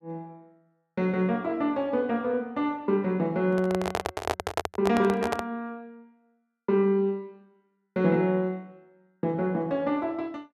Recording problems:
handling noise; from 3.5 to 5.5 s; peak +4 dB vs average level

